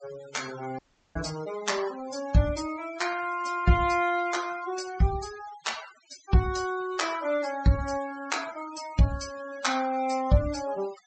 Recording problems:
low-pass filter; nothing above 8 kHz
noise reduction artefacts; signal-to-artefact ratio 16 dB
audio cutting out; at 1 s

